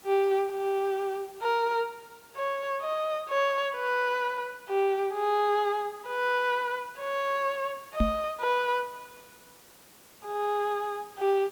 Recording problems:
background hiss; slope -3 dB per octave, SNR 24 dB
microphone bump; at 8 s; peak +6 dB vs average level

